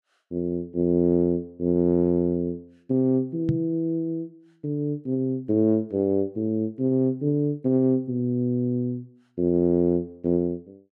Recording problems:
knock on the microphone; at 3.5 s; peak +3 dB vs average level

